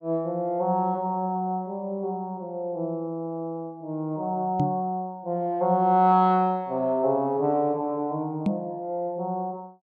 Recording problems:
microphone bump; at 4.5 s and at 8.5 s; peak +5 dB vs average level

